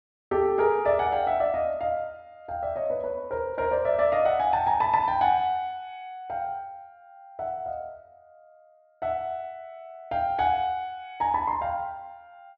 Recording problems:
treble missing; nothing above 6.2 kHz

